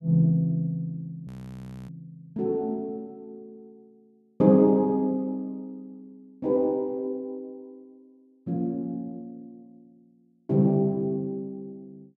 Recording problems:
audio freezing; at 1.5 s for 0.5 s

